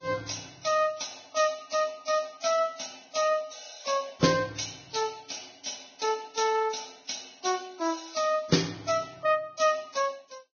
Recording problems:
lossy codec; Vorbis, log-spectral distance 10 dB, nothing above 6.3 kHz

